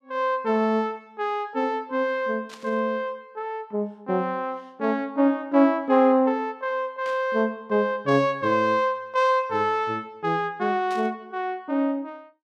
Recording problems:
burst of static; at 2.5 s, at 7 s and at 11 s; peak -13 dB vs average level

